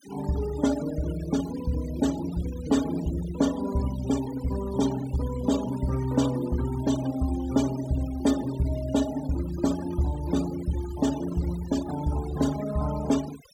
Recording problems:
denoising artefacts; signal-to-artefact ratio 15 dB

